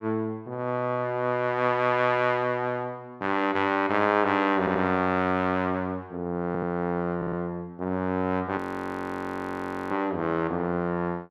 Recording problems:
audio stuttering; at 4.5 s, at 6.5 s and at 7 s
frozen audio; at 8.5 s for 1.5 s

